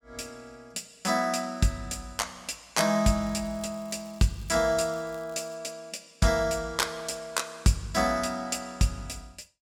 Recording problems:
crackle; from 3 to 5.5 s; loose cable, SNR 27 dB

